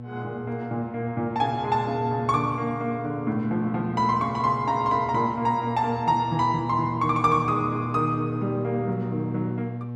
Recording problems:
mains hum; 60 Hz, harmonics up to 840 Hz, SNR 8 dB

